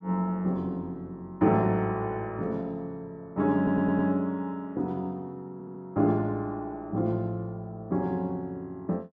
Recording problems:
audio stuttering; at 3.5 s and at 5.5 s

